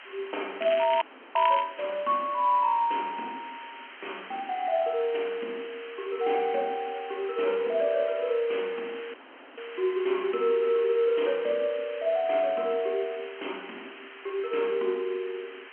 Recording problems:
phone line; 220 Hz to 3.2 kHz, G.711
hiss; SNR 16 dB
crackling; from 0.5 to 1.5 s; loose cable, SNR 10 dB
audio cutting out; at 1 s and at 9 s

